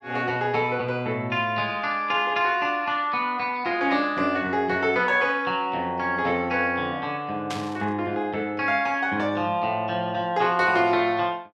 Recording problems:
burst of static; at 7.5 s; peak -5 dB vs average level

